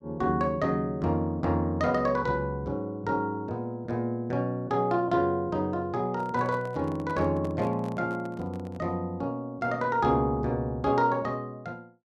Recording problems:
microphone handling noise; from 6 to 9 s; peak -11 dB vs average level

